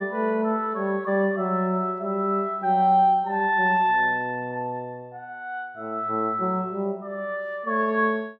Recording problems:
none

